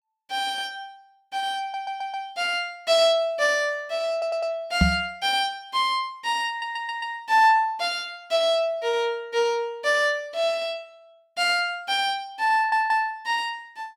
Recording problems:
audio stuttering; 4 times, first at 1.5 s
microphone thump; at 5 s; peak +8 dB vs average level

